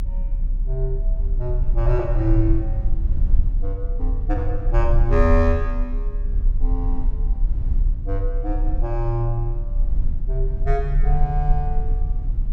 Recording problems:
rumble; below 42 Hz, strongest tone 32 Hz, SNR -2 dB

